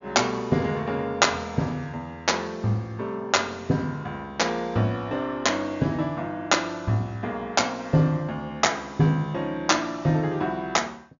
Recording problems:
treble cut off; nothing above 7.1 kHz

